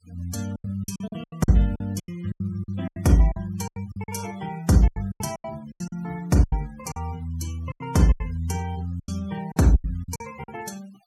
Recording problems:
noise reduction artefacts; signal-to-artefact ratio 23 dB
lost packets; 17% of the sound replaced, filled with silence

